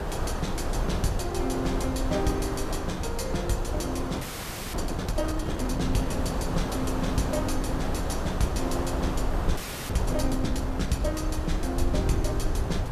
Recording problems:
background hiss; SNR 3 dB
rumble; below 76 Hz, SNR 3 dB
wind noise; below 210 Hz, SNR 9 dB
audio freezing; at 4 s for 0.5 s and at 9.5 s

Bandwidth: 14.5 kHz